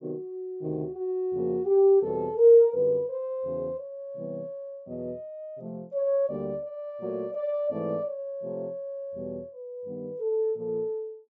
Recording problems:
treble cut off; nothing above 8 kHz

